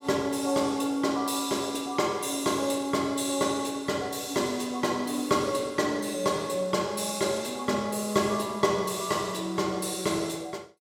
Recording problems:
none

